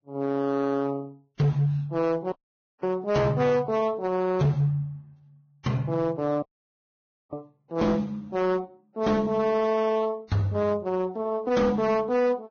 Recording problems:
lossy codec; Vorbis, log-spectral distance 2 dB, nothing above 6.3 kHz
distorted audio; hard clipping, signal-to-distortion ratio 11 dB
audio cutting out; at 2.5 s for 0.5 s and at 6.5 s for 1 s

